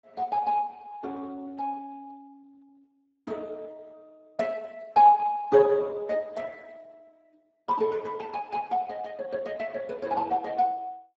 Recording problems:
codec artefacts; Speex, log-spectral distance 3 dB, nothing above 7.3 kHz

